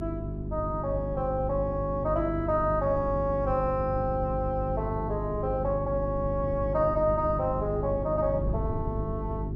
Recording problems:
hum; 50 Hz, harmonics up to 400 Hz, SNR 5 dB
wind noise; below 160 Hz, SNR 11 dB

